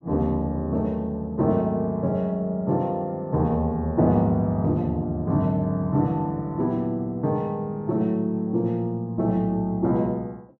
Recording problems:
none

